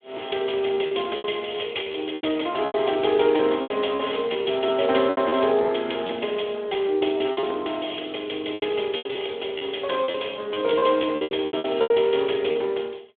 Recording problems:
phone line; 280 Hz to 3.5 kHz, Speex
packet loss; 12% of the sound replaced, filled with repeated pitch periods

